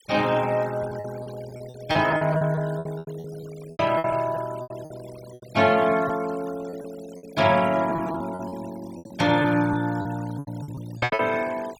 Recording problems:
denoising artefacts; signal-to-artefact ratio 19 dB
packet loss; 14% of the sound replaced, filled with repeated pitch periods

